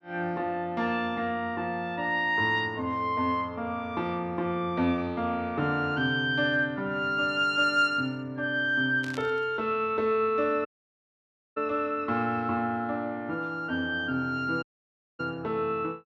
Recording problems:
burst of static; at 9 s; peak -10 dB vs average level
audio cutting out; at 11 s for 1 s and at 15 s for 0.5 s

